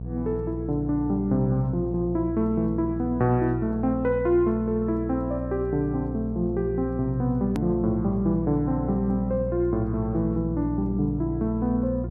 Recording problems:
hum; 60 Hz, harmonics up to 480 Hz, SNR 7 dB
click at an edit; at 7.5 s

